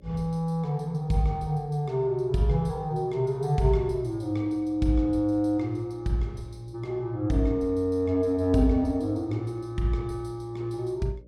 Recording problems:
hum; 60 Hz, harmonics up to 600 Hz, SNR 25 dB

